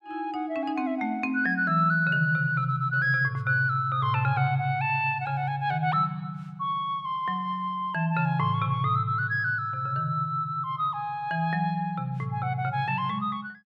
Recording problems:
none

